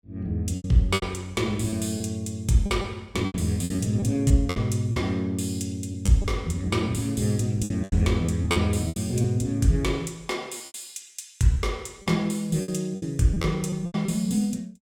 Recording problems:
packet loss; 10% of the sound replaced, filled with repeated pitch periods

